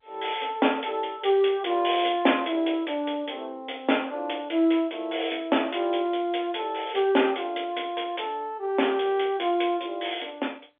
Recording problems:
phone line; 280 Hz to 3.6 kHz, G.711

